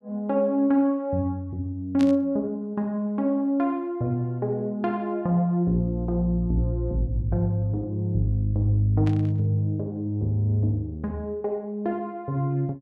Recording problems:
static burst; at 2 s and at 9 s; peak -8 dB vs average level

